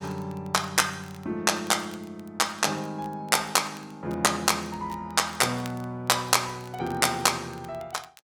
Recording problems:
crackle; vinyl, SNR 27 dB

